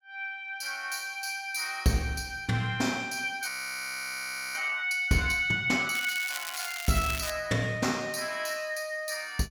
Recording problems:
frozen audio; at 3.5 s for 1 s
crackle; from 6 to 7.5 s; loose cable, SNR 7 dB

